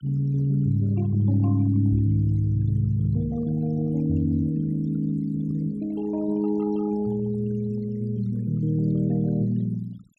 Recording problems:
noise reduction artefacts; signal-to-artefact ratio 24 dB

